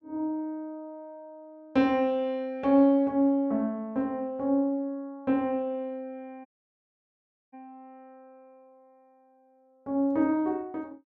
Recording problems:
dropout; at 6.5 s for 1 s

